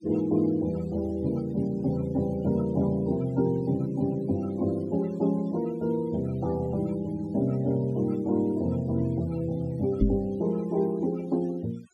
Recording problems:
denoising artefacts; signal-to-artefact ratio 23 dB
knock on the microphone; at 10 s; peak +8 dB vs average level

